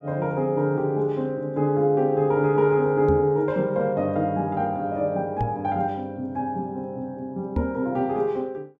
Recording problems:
knock on the microphone; at 3 s, at 5.5 s and at 7.5 s; peak +2 dB vs average level

